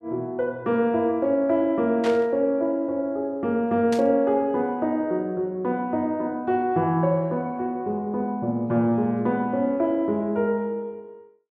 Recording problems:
burst of static; at 2 s and at 4 s; peak -6 dB vs average level

